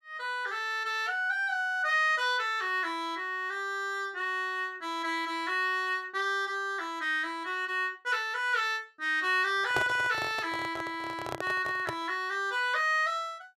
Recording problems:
microphone handling noise; from 9.5 to 12 s; peak +2 dB vs average level

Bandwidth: 14.5 kHz